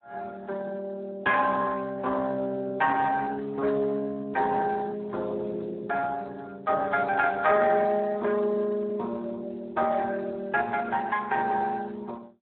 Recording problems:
phone line; 280 Hz to 3.7 kHz, Speex

